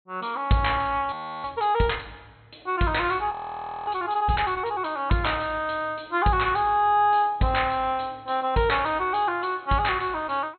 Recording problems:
treble cut off; nothing above 4.2 kHz
frozen audio; at 1 s and at 3.5 s for 0.5 s

